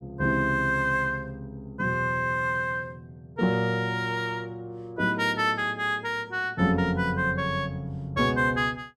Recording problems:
none

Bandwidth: 14 kHz